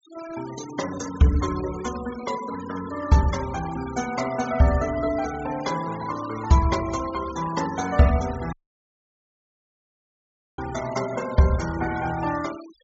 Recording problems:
low-pass filter; nothing above 8 kHz
denoising artefacts; signal-to-artefact ratio 15 dB
dropout; at 8.5 s for 2 s

